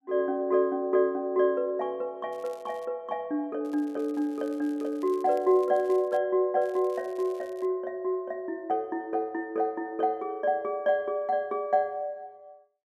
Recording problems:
crackling; at 2.5 s, from 3.5 to 6 s and from 6.5 to 7.5 s; loose cable, SNR 29 dB

